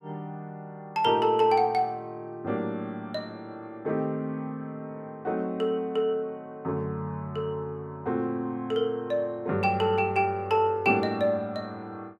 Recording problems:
none

